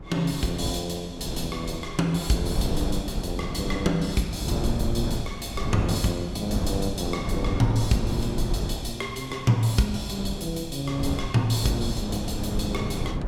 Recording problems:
wind on the microphone; below 240 Hz, SNR 4 dB

